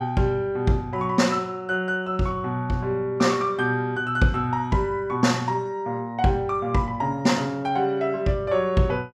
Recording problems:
none

